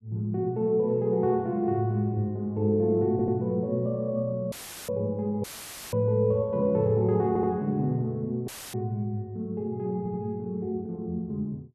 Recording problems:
audio stuttering; at 3 s, at 7.5 s and at 10 s
audio cutting out; at 4.5 s, at 5.5 s and at 8.5 s; filled with static

